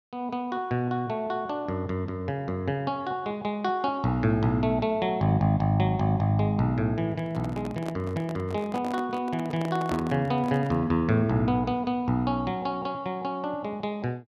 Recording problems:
handling noise; from 7 to 11 s; peak -3 dB vs average level

